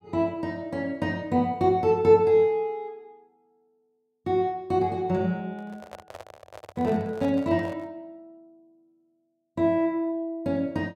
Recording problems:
handling noise; from 5.5 to 8 s; peak -11 dB vs average level

